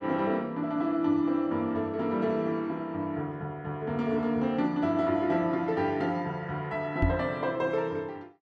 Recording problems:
microphone thump; at 7 s; peak +6 dB vs average level

